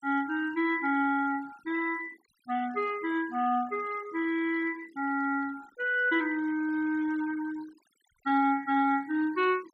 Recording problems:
noise reduction artefacts; signal-to-artefact ratio 22 dB

